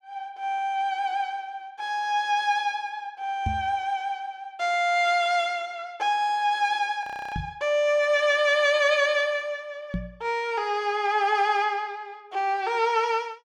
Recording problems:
microphone thump; at 3.5 s, at 7.5 s and at 10 s; peak 0 dB vs average level
frozen audio; at 7 s

